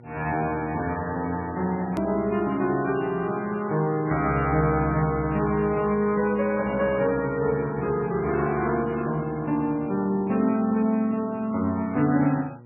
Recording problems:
lossy codec; MP3, log-spectral distance 2 dB, nothing above 13.1 kHz
hum; 60 Hz, harmonics up to 960 Hz, SNR 23 dB
edit click; at 2 s

